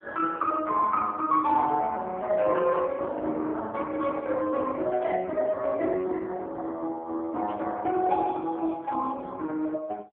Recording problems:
telephone audio; 260 Hz to 2.6 kHz, AMR-NB
static burst; at 5 s and at 7.5 s; peak -21 dB vs average level

